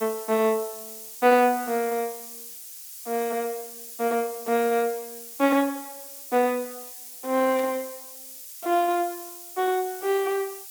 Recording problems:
background hiss; slope +7 dB per octave, SNR 13 dB
burst of static; at 7.5 s; peak -13 dB vs average level

